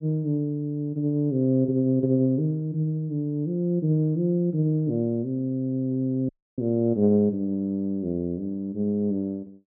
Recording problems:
audio cutting out; at 6.5 s

